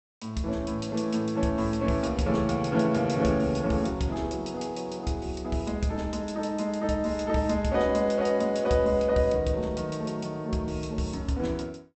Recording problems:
treble cut off; nothing above 8 kHz

